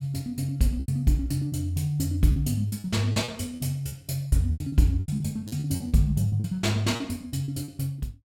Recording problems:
packet loss; 13% of the sound replaced, filled with repeated pitch periods

